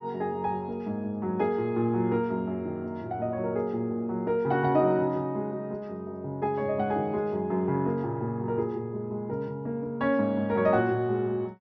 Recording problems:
treble cut off; nothing above 6 kHz

